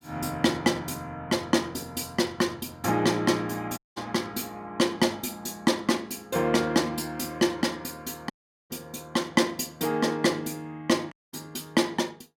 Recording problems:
dropout; at 4 s, at 8.5 s and at 11 s

